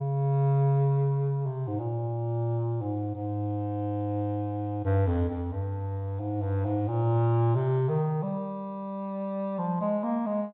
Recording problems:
low-pass filter; nothing above 4 kHz

